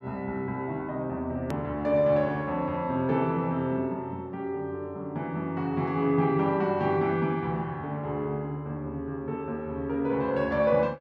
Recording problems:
edit click; at 1.5 s

